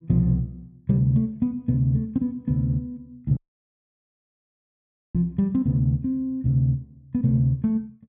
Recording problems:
audio cutting out; at 3.5 s for 2 s

